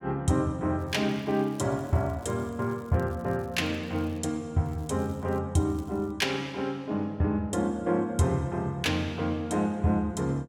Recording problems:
crackle; from 1 to 4 s, at 4.5 s and at 5.5 s; loose cable, SNR 29 dB

